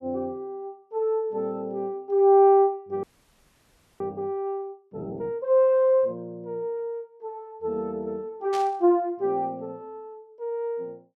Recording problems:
frozen audio; at 3 s for 1 s
static burst; at 8.5 s; peak -9 dB vs average level

